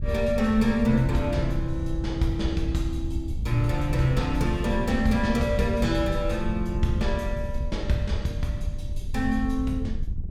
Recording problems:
wind on the microphone; below 84 Hz, SNR 5 dB

